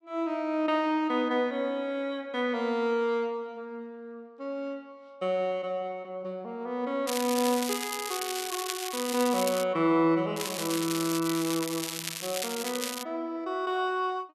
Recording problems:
crackling; from 7 to 9.5 s and from 10 to 13 s; loose cable, SNR 5 dB

